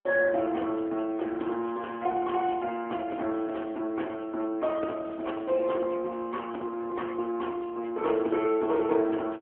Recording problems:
phone line; 240 Hz to 3.3 kHz, AMR-NB

